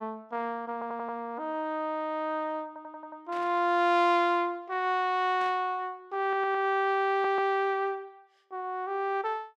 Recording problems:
stutter; 4 times, first at 0.5 s
static burst; at 3.5 s and at 5.5 s; peak -14 dB vs average level

